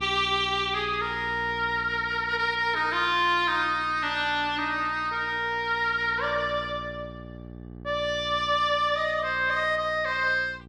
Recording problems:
electrical hum; 60 Hz, harmonics up to 840 Hz, SNR 19 dB

